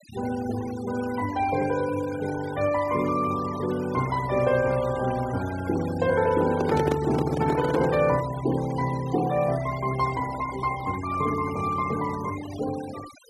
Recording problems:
noise reduction artefacts; signal-to-artefact ratio 15 dB
microphone handling noise; from 6.5 to 8 s; peak +3 dB vs average level

